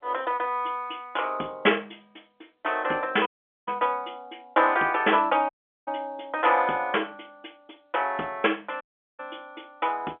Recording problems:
telephone audio; 240 Hz to 3.4 kHz, G.711
dropout; at 3.5 s, at 5.5 s and at 9 s

